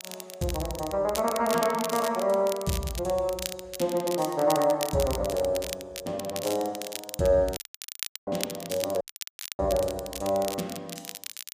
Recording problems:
crackling; vinyl, SNR 10 dB
audio cutting out; at 7.5 s for 0.5 s and at 9 s for 0.5 s

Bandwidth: 15 kHz